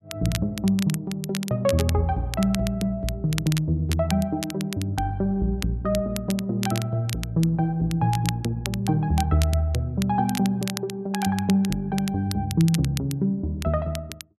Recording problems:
crackle; vinyl, SNR 12 dB

